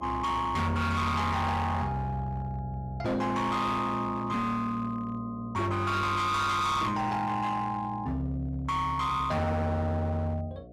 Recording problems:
distortion; hard clipping, signal-to-distortion ratio 7 dB
electrical hum; 60 Hz, harmonics up to 720 Hz, SNR 20 dB

